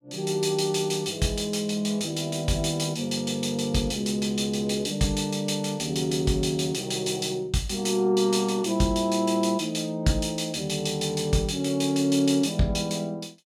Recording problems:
none

